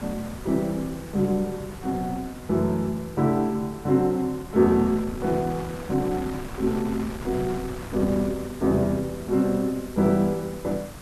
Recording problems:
hiss; slope +2 dB per octave, SNR 23 dB
wind on the microphone; below 880 Hz, SNR 15 dB

